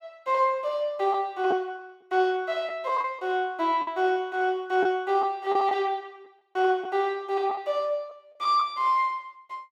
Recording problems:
packet loss; 4% of the sound replaced, filled with the last packet

